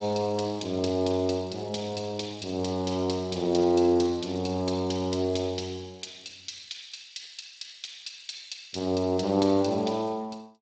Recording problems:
codec artefacts; Speex, log-spectral distance 9 dB, nothing above 7.8 kHz

